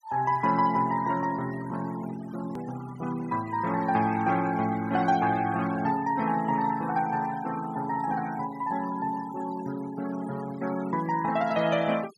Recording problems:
noise reduction artefacts; signal-to-artefact ratio 16 dB
click at an edit; at 2.5 s

